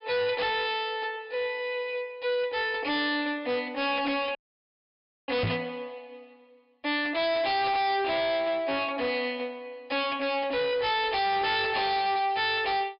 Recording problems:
low-pass filter; nothing above 5.5 kHz
distortion; hard clipping, signal-to-distortion ratio 5 dB
audio cutting out; at 4.5 s for 1 s
microphone bump; at 5.5 s; peak +2 dB vs average level

